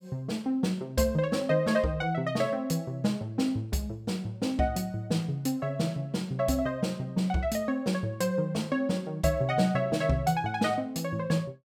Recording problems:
none

